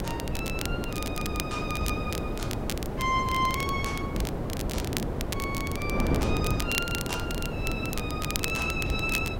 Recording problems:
background hiss; SNR 24 dB
wind noise; below 450 Hz, SNR 0 dB
crackle; vinyl, SNR 5 dB

